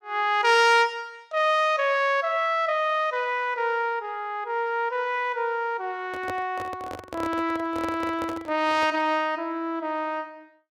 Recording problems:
handling noise; from 6 to 9 s; peak -6 dB vs average level

